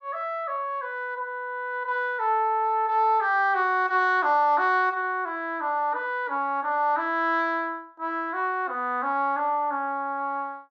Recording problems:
none

